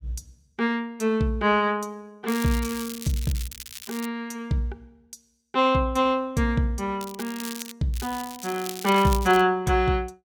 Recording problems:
crackle; from 2.5 to 4 s, at 7 s and from 8 to 9.5 s; loose cable, SNR 13 dB

